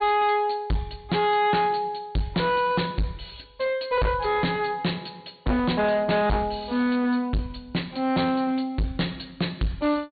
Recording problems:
treble cut off; nothing above 4.5 kHz
distortion; hard clipping, uneven, signal-to-distortion ratio 6 dB

